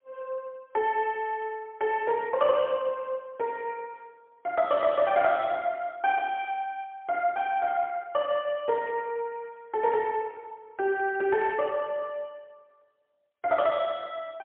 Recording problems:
telephone audio; 280 Hz to 3.5 kHz, AMR-NB, then MP3

